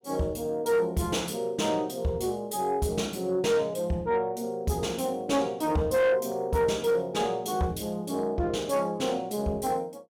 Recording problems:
distorted audio; soft clipping, signal-to-distortion ratio 11 dB

